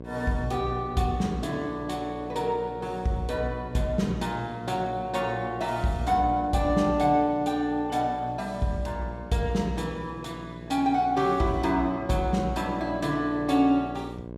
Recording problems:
hum; 60 Hz, harmonics up to 1.1 kHz, SNR 14 dB

